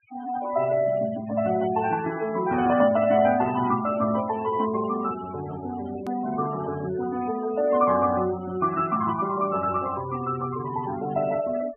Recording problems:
low-pass filter; nothing above 3.1 kHz
noise reduction artefacts; signal-to-artefact ratio 15 dB
edit click; at 6 s

